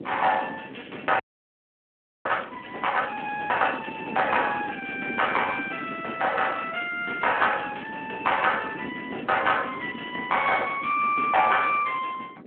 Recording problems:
telephone audio; 220 Hz to 3.2 kHz, Speex
wind on the microphone; below 410 Hz, SNR 14 dB
crackle; from 0.5 to 4.5 s; loose cable, SNR 27 dB
audio freezing; at 1 s for 1 s

